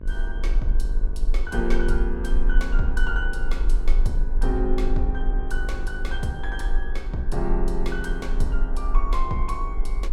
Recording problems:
hum; 50 Hz, harmonics up to 1.6 kHz, SNR 13 dB
rumble; below 36 Hz, strongest tone 20 Hz, SNR -3 dB

